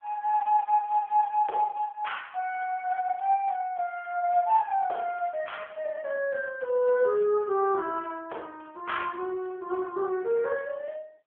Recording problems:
phone line; 340 Hz to 3.4 kHz, AMR-NB

